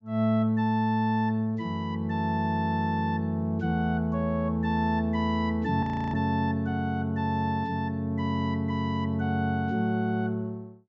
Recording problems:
treble missing; nothing above 7.3 kHz
audio freezing; at 6 s

